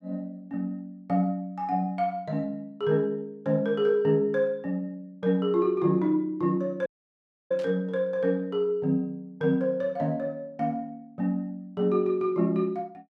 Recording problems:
dropout; at 7 s for 0.5 s
burst of static; at 7.5 s; peak -15 dB vs average level

